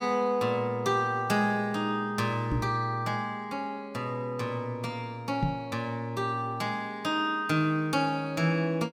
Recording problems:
microphone bump; at 2.5 s and at 5.5 s; peak +3 dB vs average level

